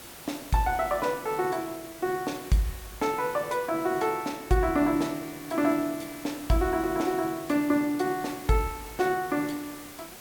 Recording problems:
background hiss; slope -3 dB per octave, SNR 15 dB

